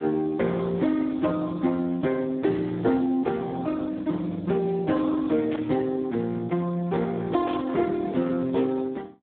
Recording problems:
telephone audio; 150 Hz to 2.1 kHz, Speex
burst of static; at 5.5 s and at 7.5 s; peak -8 dB vs average level

